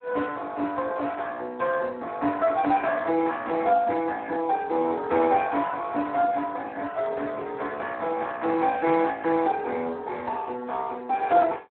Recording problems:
telephone audio; 260 Hz to 3.2 kHz, Speex

